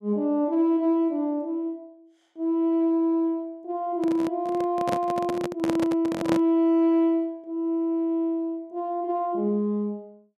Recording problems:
handling noise; from 4 to 6.5 s; peak +1 dB vs average level

